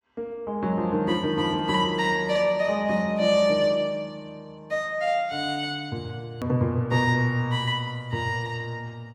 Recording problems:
hard cut with a click; at 6.5 s

